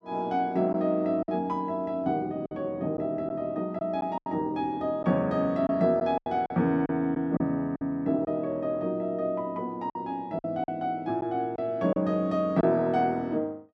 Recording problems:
lost packets; 6% of the sound replaced, filled with silence

